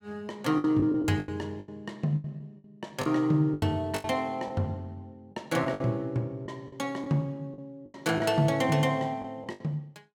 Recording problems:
packet loss; 11% of the sound replaced, filled with the last packet

